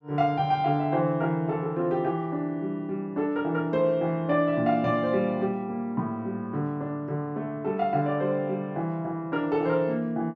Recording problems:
none

